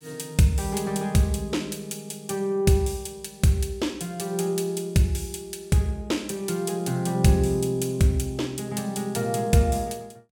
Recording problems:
none

